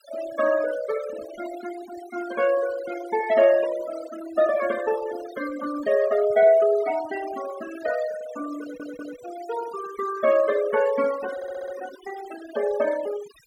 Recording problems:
noise reduction artefacts; signal-to-artefact ratio 14 dB
stutter; at 8.5 s and at 11 s

